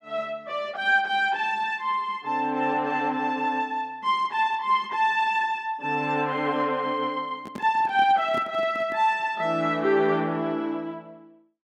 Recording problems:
microphone handling noise; from 7.5 to 9 s; peak -7 dB vs average level

